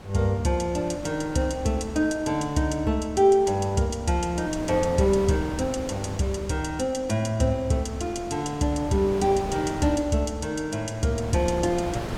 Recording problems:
wind noise; below 800 Hz, SNR 13 dB

